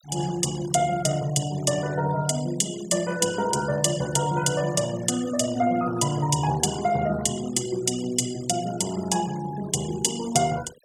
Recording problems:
denoising artefacts; signal-to-artefact ratio 17 dB

